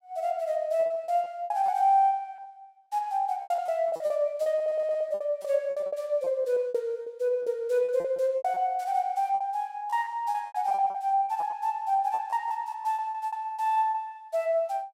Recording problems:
lost packets; 15% of the sound replaced, filled with repeated pitch periods
stutter; at 4.5 s

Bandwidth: 16 kHz